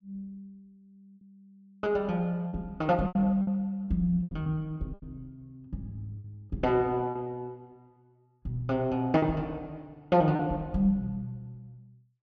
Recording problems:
packet loss; 7% of the sound replaced, filled with repeated pitch periods

